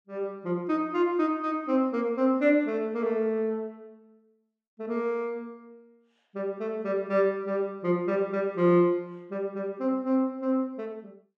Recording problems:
none

